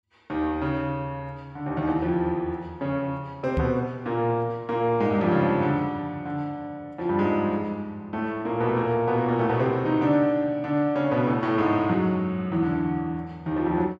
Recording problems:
knock on the microphone; at 3.5 s; peak +2 dB vs average level

